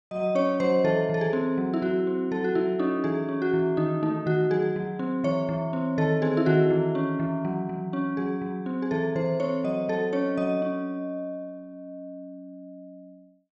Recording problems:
none

